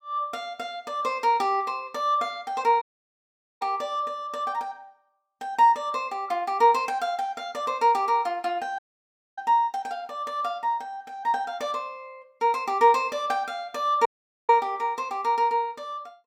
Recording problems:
dropout; at 3 s for 1 s, at 9 s for 0.5 s and at 14 s

